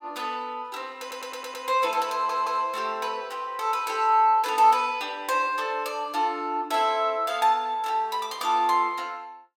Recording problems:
audio stuttering; at 1 s and at 2 s

